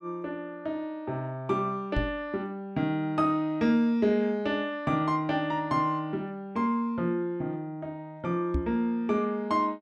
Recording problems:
knock on the microphone; at 2 s and at 8.5 s; peak +3 dB vs average level

